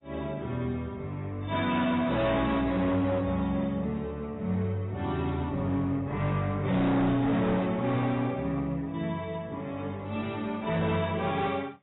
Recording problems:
lossy compression; AAC, log-spectral distance 2 dB, nothing above 3.8 kHz
distortion; hard clipping, signal-to-distortion ratio 8 dB

